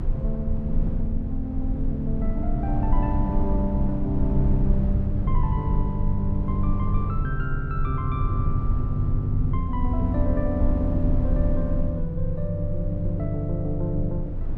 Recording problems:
rumble; below 72 Hz, strongest tone 22 Hz, SNR 1 dB

